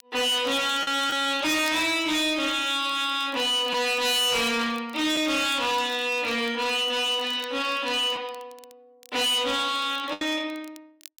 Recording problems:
distorted audio; hard clipping, uneven, signal-to-distortion ratio 8 dB
crackle; vinyl, SNR 26 dB
packet loss; 1.7% of the sound replaced, filled with the last packet

